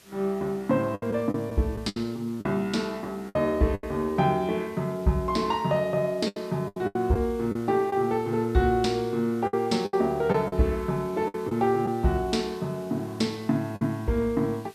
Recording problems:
background hiss; slope -1 dB per octave, SNR 26 dB
lost packets; 7% of the sound replaced, filled with the last packet

